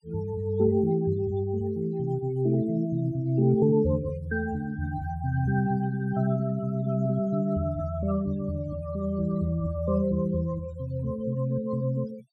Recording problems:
noise reduction artefacts; signal-to-artefact ratio 24 dB

